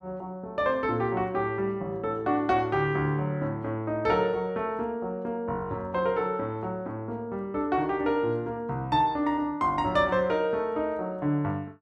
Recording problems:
none

